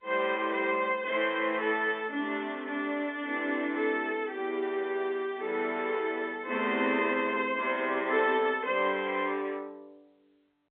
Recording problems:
telephone audio; 240 Hz to 3.6 kHz, G.711

